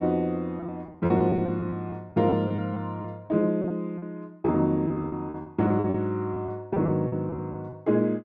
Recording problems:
packet loss; 13% of the sound replaced, filled with repeated pitch periods

